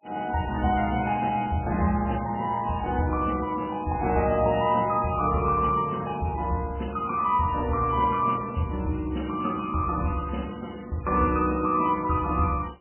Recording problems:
lossy compression; AAC, then MP3, log-spectral distance 4 dB, nothing above 2.9 kHz

